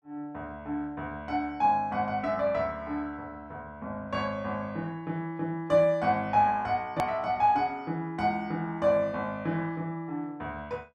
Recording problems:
hard cut with a click; at 7 s

